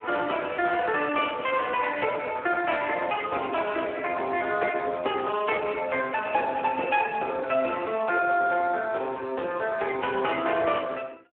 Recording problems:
telephone audio; 280 Hz to 2.9 kHz, Speex

